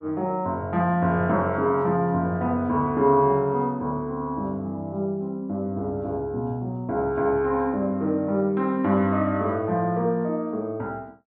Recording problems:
none

